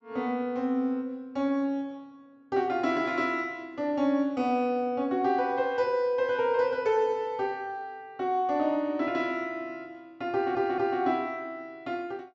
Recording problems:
treble cut off; nothing above 7.6 kHz
audio stuttering; at 10 s

